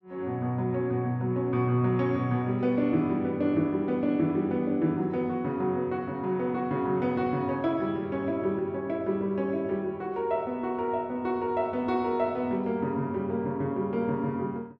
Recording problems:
none

